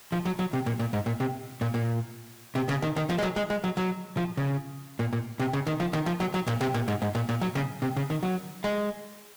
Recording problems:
distorted audio; hard clipping, signal-to-distortion ratio 6 dB
background hiss; slope 0 dB per octave, SNR 20 dB

